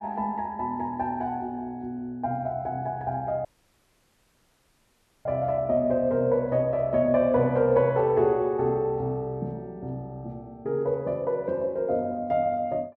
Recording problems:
dropout; at 3.5 s for 2 s

